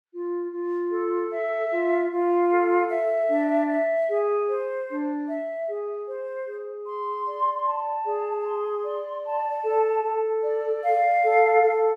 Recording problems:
none

